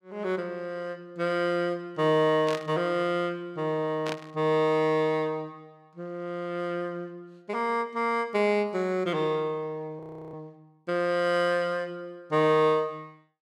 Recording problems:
burst of static; at 2.5 s and at 4 s; peak -4 dB vs average level
audio freezing; at 10 s

